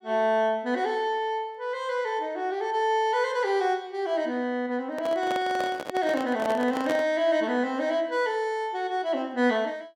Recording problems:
handling noise; from 5 to 7 s; peak 0 dB vs average level

